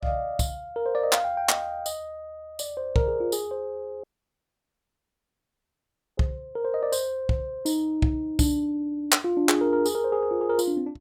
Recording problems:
dropout; at 4 s for 2 s

